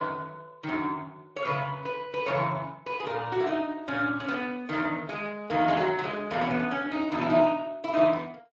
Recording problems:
lossy compression; Speex, then MP3, log-spectral distance 3 dB

